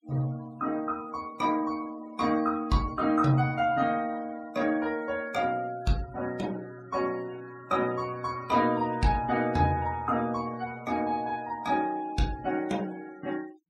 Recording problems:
denoising artefacts; signal-to-artefact ratio 21 dB

